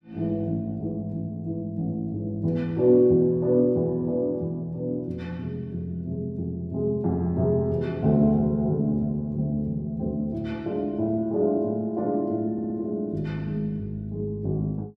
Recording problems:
stutter; at 13 s

